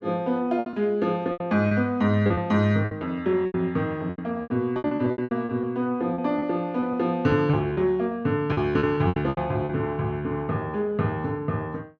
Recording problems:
lost packets; 12% of the sound replaced, filled with repeated pitch periods

